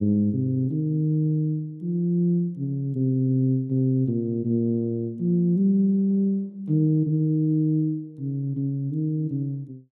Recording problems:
none

